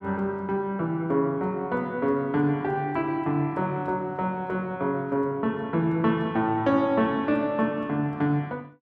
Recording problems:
none

